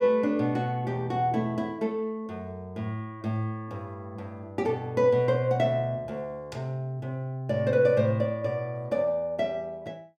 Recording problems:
none

